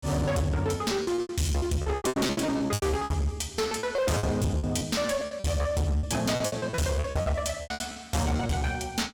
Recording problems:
distorted audio; hard clipping, uneven, signal-to-distortion ratio 5 dB
lost packets; 19% of the sound replaced, filled with repeated pitch periods

